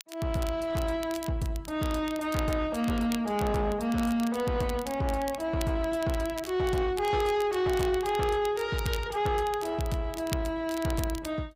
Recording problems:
codec artefacts; Opus, log-spectral distance 2 dB, nothing above 15.5 kHz
distorted audio; soft clipping, signal-to-distortion ratio 11 dB
crackle; vinyl, SNR 16 dB

